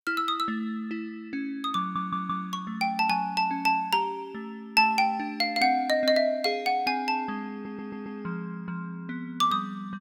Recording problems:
audio stuttering; at 2 s and at 7.5 s

